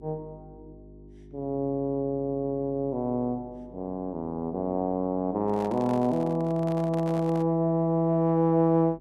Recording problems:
electrical hum; 50 Hz, harmonics up to 400 Hz, SNR 24 dB
handling noise; from 5.5 to 7.5 s; peak -10 dB vs average level

